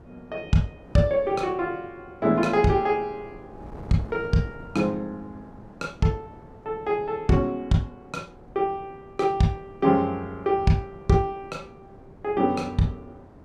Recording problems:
wind on the microphone; below 470 Hz, SNR 21 dB

